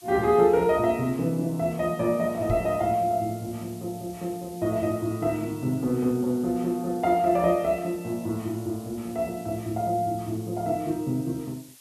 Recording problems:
hiss; SNR 22 dB
knock on the microphone; at 2.5 s; peak 0 dB vs average level

